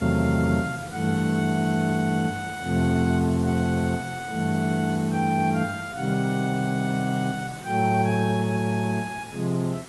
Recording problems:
lossy compression; AAC, log-spectral distance 6 dB
hiss; slope -4 dB per octave, SNR 17 dB

